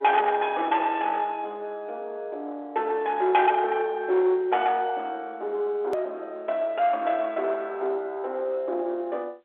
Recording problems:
telephone audio; 840 Hz to 3.6 kHz, G.711
distorted audio; soft clipping, signal-to-distortion ratio 10 dB
click at an edit; at 6 s

